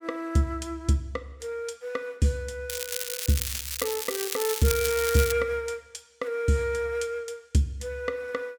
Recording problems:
crackling; from 2.5 to 5.5 s; loose cable, SNR 2 dB

